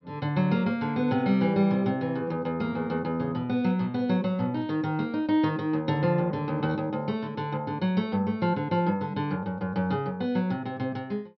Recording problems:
treble missing; nothing above 5.5 kHz

